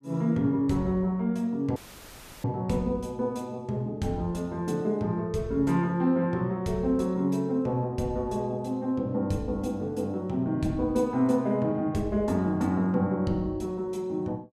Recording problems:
audio cutting out; at 2 s for 0.5 s; filled with static

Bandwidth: 14.5 kHz